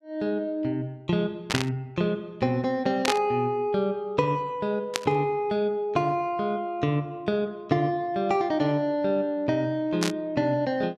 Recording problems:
burst of static; 4 times, first at 1.5 s; peak +5 dB vs average level

